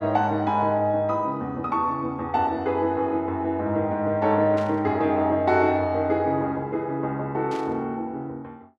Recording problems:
burst of static; at 4.5 s and at 7.5 s; peak -12 dB vs average level

